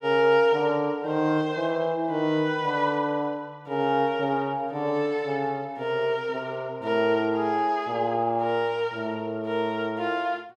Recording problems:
none

